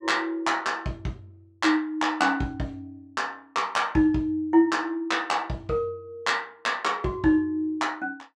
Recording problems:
none

